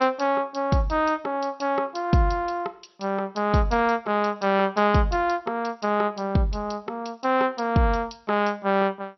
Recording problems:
lossy codec; MP2, log-spectral distance 4 dB, nothing above 5.8 kHz

